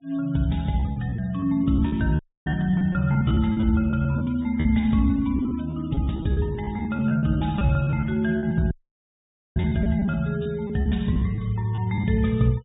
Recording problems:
treble cut off; nothing above 3.8 kHz
noise reduction artefacts; signal-to-artefact ratio 26 dB
lost packets; 13% of the sound replaced, filled with repeated pitch periods
dropout; at 2 s and at 8.5 s for 1 s

